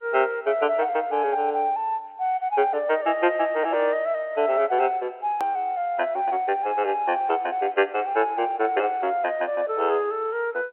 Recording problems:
phone line; 320 Hz to 3.3 kHz, G.711
hard cut with a click; at 5.5 s

